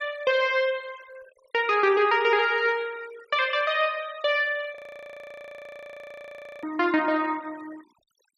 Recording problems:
denoising artefacts; signal-to-artefact ratio 25 dB
frozen audio; at 5 s for 2 s

